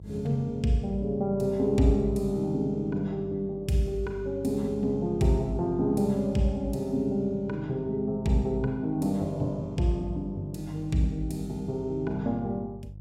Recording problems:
mains hum; 50 Hz, harmonics up to 350 Hz, SNR 16 dB

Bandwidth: 16 kHz